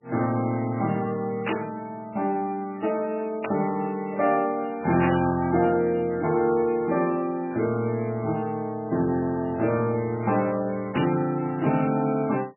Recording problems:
codec artefacts; MP3, log-spectral distance 3 dB, nothing above 2.4 kHz
static burst; 4 times, first at 1.5 s; peak 0 dB vs average level

